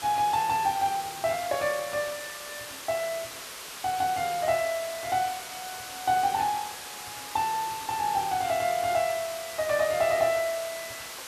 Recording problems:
hiss; slope 0 dB per octave, SNR 10 dB

